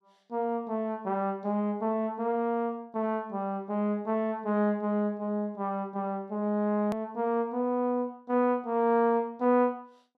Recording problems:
click at an edit; at 7 s

